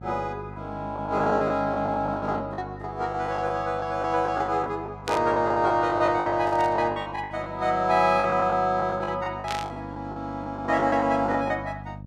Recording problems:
hum; 50 Hz, harmonics up to 600 Hz, SNR 16 dB
packet loss; 14% of the sound replaced, filled with the last packet
static burst; at 5 s, at 6.5 s and at 9.5 s; peak -2 dB vs average level

